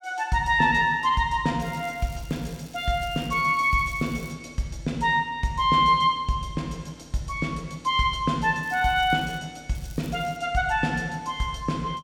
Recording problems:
crackle; from 1.5 to 4.5 s, at 8.5 s and at 10 s; loose cable, SNR 24 dB

